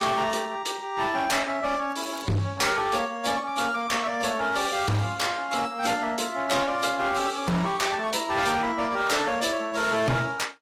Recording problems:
lossy compression; AAC, log-spectral distance 4 dB
distortion; hard clipping, signal-to-distortion ratio 8 dB
crackle; at 2 s; loose cable, SNR 23 dB

